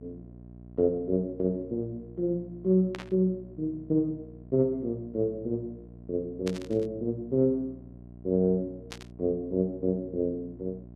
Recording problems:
hum; 60 Hz, harmonics up to 720 Hz, SNR 18 dB
static burst; at 3 s, at 6.5 s and at 9 s; peak -5 dB vs average level

